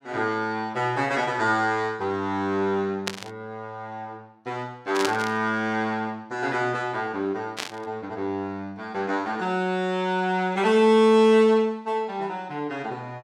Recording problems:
burst of static; at 3 s, at 5 s and at 7.5 s; peak +1 dB vs average level

